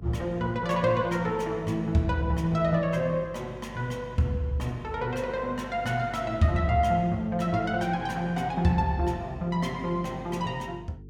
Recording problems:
electrical hum; 50 Hz, harmonics up to 450 Hz, SNR 18 dB

